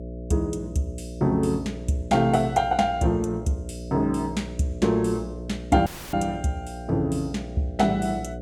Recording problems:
hum; 60 Hz, harmonics up to 660 Hz, SNR 12 dB
dropout; at 6 s

